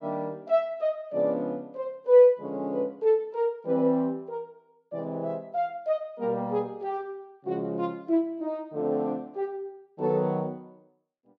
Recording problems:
none

